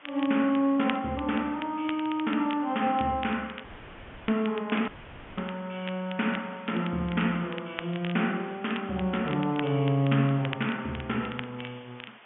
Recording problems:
phone line; 150 Hz to 3.4 kHz, G.711
hiss; SNR 23 dB
crackle; vinyl, SNR 15 dB
dropout; at 3.5 s for 0.5 s and at 5 s; filled with static

